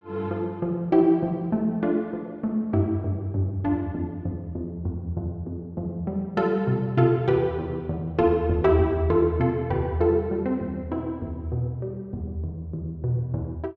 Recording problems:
none

